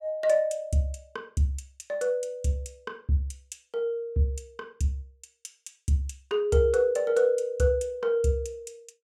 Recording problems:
none

